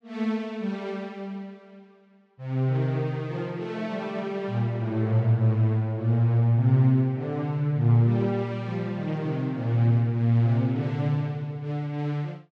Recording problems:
none

